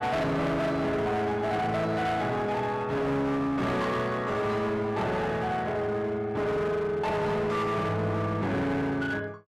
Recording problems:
distorted audio; hard clipping, signal-to-distortion ratio 8 dB

